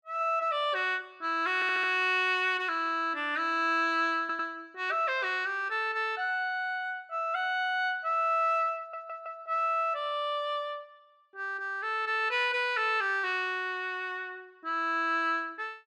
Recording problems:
stutter; at 1.5 s, at 4 s and at 9 s

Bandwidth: 12.5 kHz